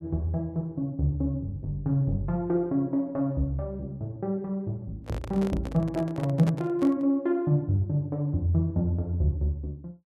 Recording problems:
microphone handling noise; from 5 to 7 s; peak -3 dB vs average level

